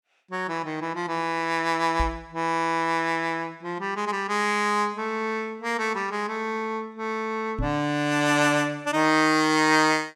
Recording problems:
microphone bump; at 2 s and at 7.5 s; peak -1 dB vs average level

